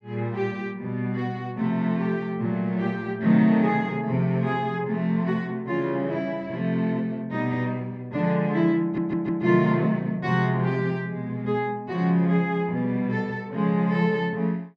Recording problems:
stutter; at 9 s

